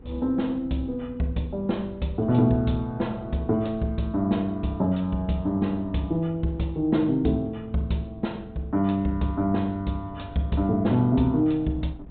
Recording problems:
treble missing; nothing above 4 kHz
wind noise; below 200 Hz, SNR 19 dB

